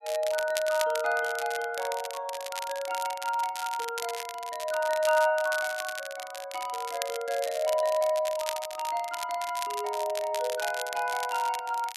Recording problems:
crackling; vinyl, SNR 10 dB

